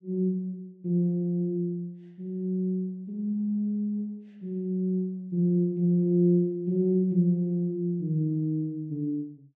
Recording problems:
none

